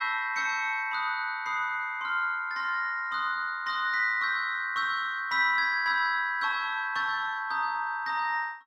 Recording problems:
none

